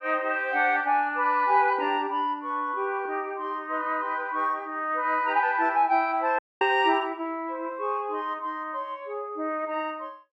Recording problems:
dropout; at 6.5 s

